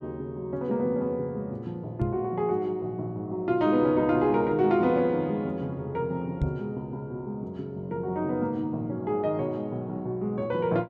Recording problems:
microphone thump; at 2 s and at 6.5 s; peak +4 dB vs average level

